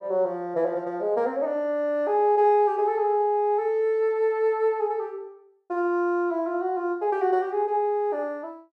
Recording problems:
none

